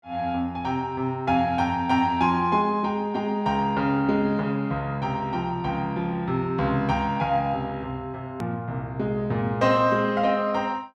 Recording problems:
click at an edit; at 8.5 s

